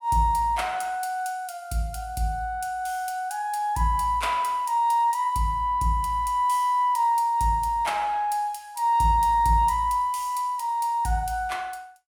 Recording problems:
none

